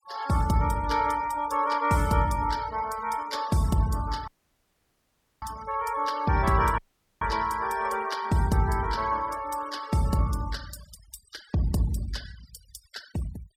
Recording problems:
noise reduction artefacts; signal-to-artefact ratio 19 dB
dropout; at 4.5 s for 1 s and at 7 s

